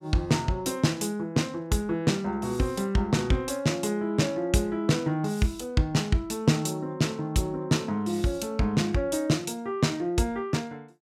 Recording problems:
none

